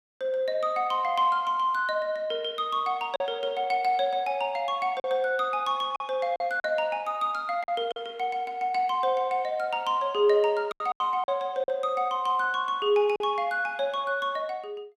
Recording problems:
lost packets; 4% of the sound replaced, filled with silence

